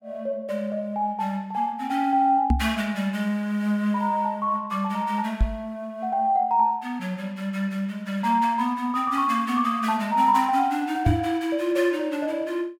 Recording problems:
microphone thump; at 2.5 s, at 5.5 s and at 11 s; peak +7 dB vs average level

